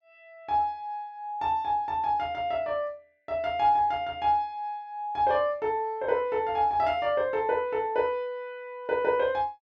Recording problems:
none

